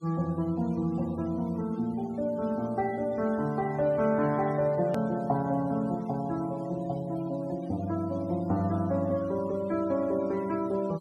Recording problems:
noise reduction artefacts; signal-to-artefact ratio 22 dB
hard cut with a click; at 5 s

